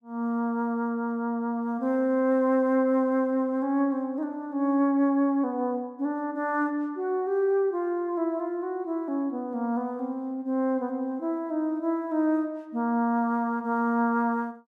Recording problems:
none

